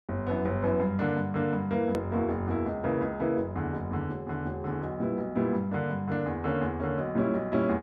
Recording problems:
click at an edit; at 2 s

